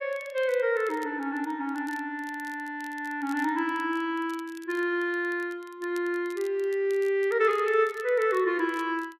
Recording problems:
crackling; vinyl, SNR 25 dB

